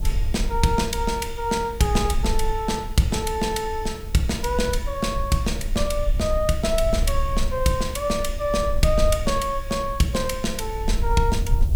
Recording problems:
hiss; SNR 23 dB
low-frequency rumble; below 60 Hz, SNR 6 dB

